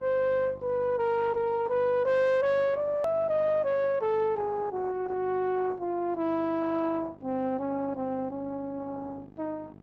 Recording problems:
lossy compression; Opus, log-spectral distance 2 dB
distortion; soft clipping, signal-to-distortion ratio 11 dB
hum; 50 Hz, harmonics up to 900 Hz, SNR 23 dB
hard cut with a click; at 3 s

